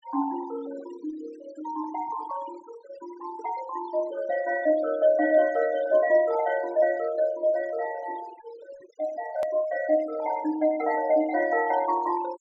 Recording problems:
treble missing; nothing above 8 kHz
noise reduction artefacts; signal-to-artefact ratio 16 dB
hard cut with a click; at 9.5 s

